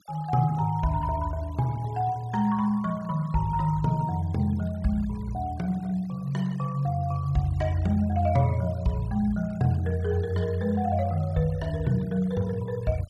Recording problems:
noise reduction artefacts; signal-to-artefact ratio 24 dB

